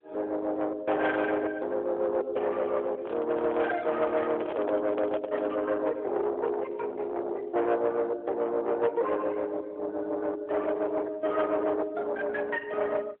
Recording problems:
phone line; 370 Hz to 2.3 kHz, AMR-NB
distortion; soft clipping, signal-to-distortion ratio 9 dB
handling noise; from 3 to 5.5 s; peak 0 dB vs average level

